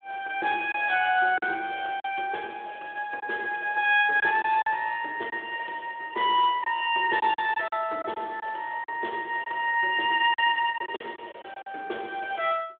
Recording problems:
phone line; 280 Hz to 3.5 kHz, Speex
packet loss; 6% of the sound replaced, filled with silence

